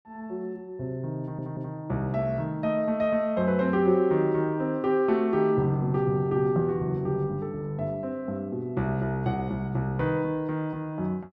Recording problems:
stutter; at 1 s

